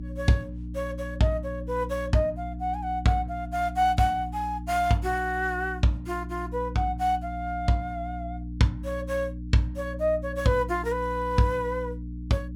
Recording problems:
hum; 60 Hz, harmonics up to 300 Hz, SNR 9 dB

